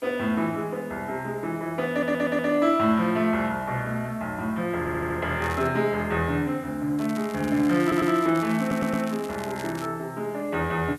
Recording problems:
hiss; slope -2 dB per octave, SNR 27 dB
audio stuttering; 4 times, first at 2 s
crackling; at 5.5 s and from 7 to 10 s; loose cable, SNR 18 dB

